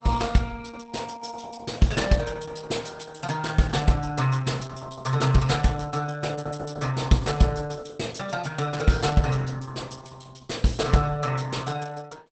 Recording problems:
lossy compression; Opus, log-spectral distance 5 dB, nothing above 8.2 kHz

